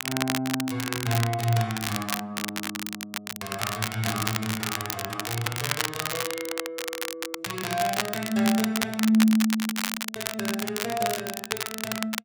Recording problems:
crackle; vinyl, SNR 2 dB

